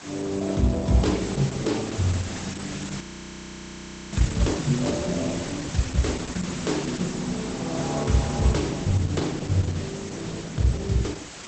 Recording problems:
lossy compression; Opus, log-spectral distance 13 dB, nothing above 8 kHz
hum; 60 Hz, harmonics up to 600 Hz, SNR 30 dB
background hiss; slope -1 dB per octave, SNR 10 dB
crackling; at 1.5 s, from 2.5 to 5 s and from 9 to 10 s; loose cable, SNR 25 dB
frozen audio; at 3 s for 1 s

